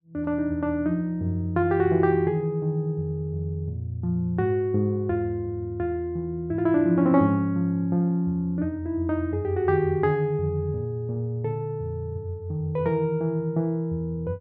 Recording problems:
none

